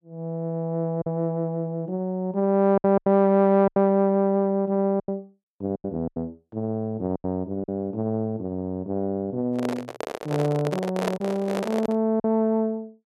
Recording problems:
lost packets; 6% of the sound replaced, filled with silence
microphone handling noise; from 9.5 to 12 s; peak +2 dB vs average level

